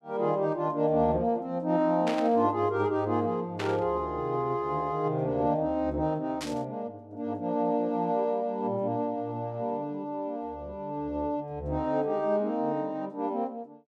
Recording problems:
burst of static; at 2 s, at 3.5 s and at 6.5 s; peak -3 dB vs average level

